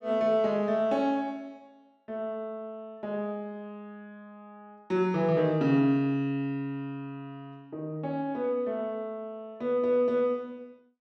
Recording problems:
none

